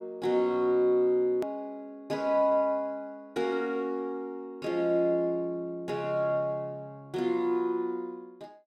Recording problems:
click at an edit; at 1.5 s

